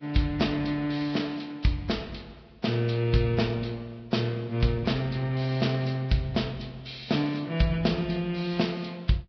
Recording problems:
lossy compression; Vorbis, log-spectral distance 6 dB, nothing above 5.5 kHz

